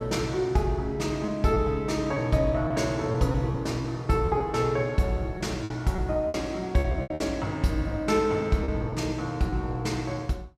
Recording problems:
lost packets; 6% of the sound replaced, filled with repeated pitch periods

